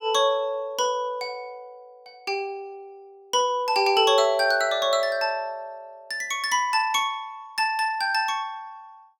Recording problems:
none

